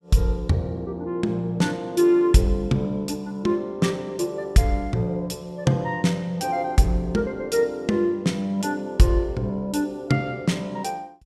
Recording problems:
none

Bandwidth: 14.5 kHz